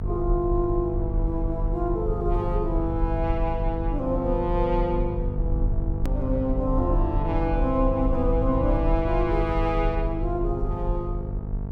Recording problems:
hum; 50 Hz, harmonics up to 950 Hz, SNR 5 dB
low-frequency rumble; below 50 Hz, strongest tone 36 Hz, SNR 3 dB
hard cut with a click; at 6 s

